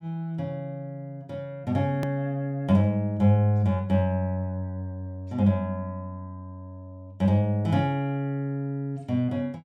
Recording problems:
click at an edit; at 2 s

